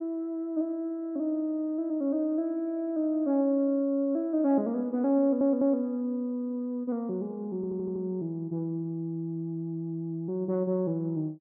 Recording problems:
audio stuttering; at 5 s and at 7.5 s

